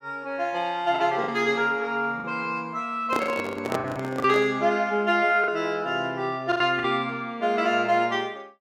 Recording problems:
packet loss; 6% of the sound replaced, filled with the last packet
microphone handling noise; from 3 to 4.5 s; peak +1 dB vs average level

